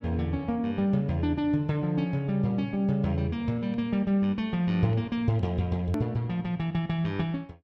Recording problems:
hard cut with a click; at 6 s

